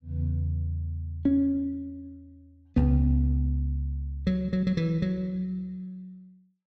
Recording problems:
none

